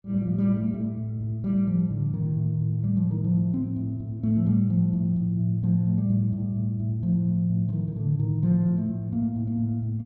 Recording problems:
none

